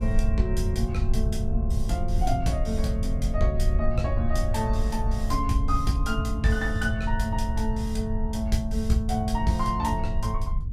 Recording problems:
rumble; below 80 Hz, SNR 0 dB

